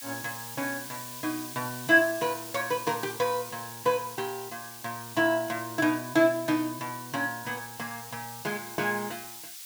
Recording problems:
hiss; slope +5 dB per octave, SNR 11 dB

